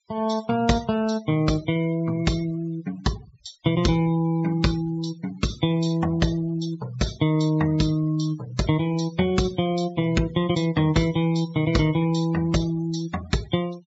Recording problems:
low-pass filter; nothing above 8 kHz
denoising artefacts; signal-to-artefact ratio 20 dB

